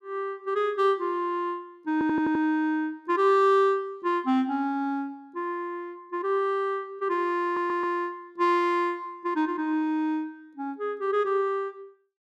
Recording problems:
audio stuttering; at 2 s and at 7.5 s

